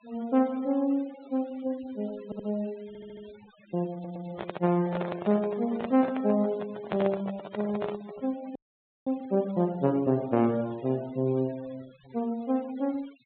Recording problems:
treble cut off; nothing above 4 kHz
noise reduction artefacts; signal-to-artefact ratio 22 dB
stutter; at 2.5 s, at 3 s and at 4 s
microphone handling noise; from 4 to 8.5 s; peak +1 dB vs average level
frozen audio; at 8.5 s for 0.5 s

